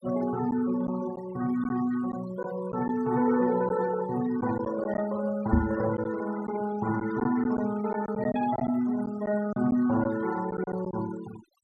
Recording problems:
noise reduction artefacts; signal-to-artefact ratio 15 dB
packet loss; 4% of the sound replaced, filled with silence
microphone thump; at 5.5 s; peak +8 dB vs average level

